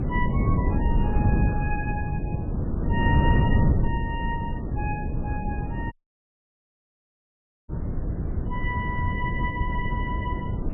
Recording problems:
lossy codec; MP3, log-spectral distance 2 dB, nothing above 2.5 kHz
wind noise; below 180 Hz, SNR -6 dB
dropout; at 6 s for 2 s

